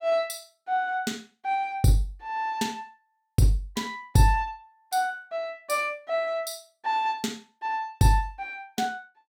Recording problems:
none

